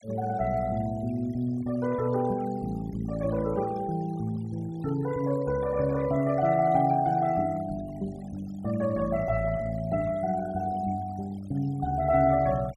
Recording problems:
denoising artefacts; signal-to-artefact ratio 21 dB

